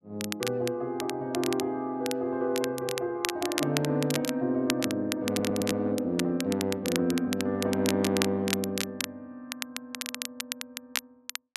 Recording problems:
crackling; vinyl, SNR 6 dB
audio stuttering; at 5.5 s

